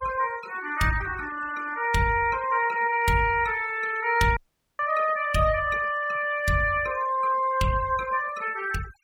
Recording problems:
noise reduction artefacts; signal-to-artefact ratio 18 dB
dropout; at 4.5 s

